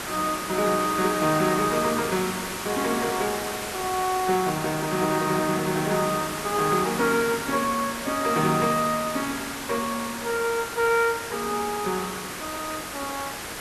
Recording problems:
background hiss; slope -3 dB per octave, SNR 6 dB

